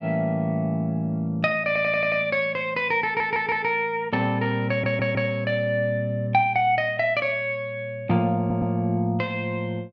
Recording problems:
stutter; 4 times, first at 1.5 s

